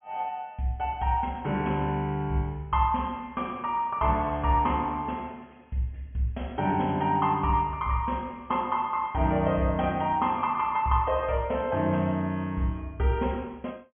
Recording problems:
treble cut off; nothing above 3.3 kHz

